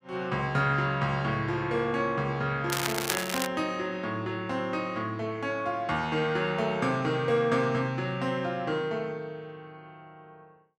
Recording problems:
crackle; at 2.5 s; loose cable, SNR 3 dB

